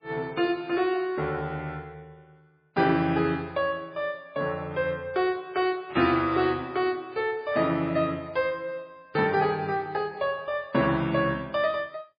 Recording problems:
lossy compression; MP3, log-spectral distance 2 dB, nothing above 4.6 kHz

